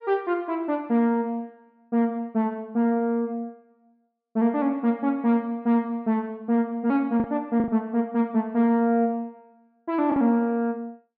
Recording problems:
treble missing; nothing above 5.4 kHz
lost packets; 1.7% of the sound replaced, filled with the last packet

